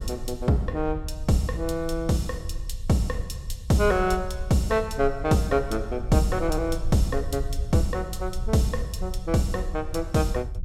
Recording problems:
low-frequency rumble; below 66 Hz, SNR 9 dB

